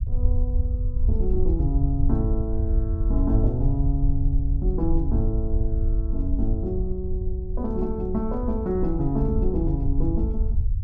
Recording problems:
rumble; below 66 Hz, SNR -2 dB

